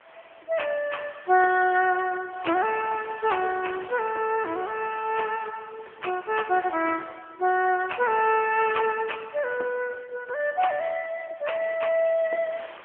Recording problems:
telephone audio; 280 Hz to 3.3 kHz, AMR-NB
wind on the microphone; below 2.5 kHz, SNR 22 dB

